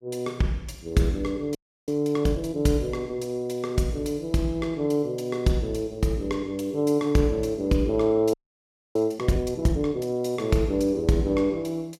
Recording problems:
frozen audio; at 1.5 s and at 8.5 s for 0.5 s

